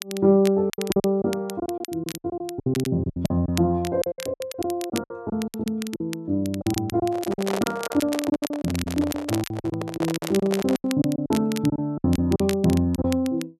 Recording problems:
crackling; vinyl, SNR 13 dB
packet loss; 15% of the sound replaced, filled with silence
handling noise; from 7 to 11 s; peak 0 dB vs average level

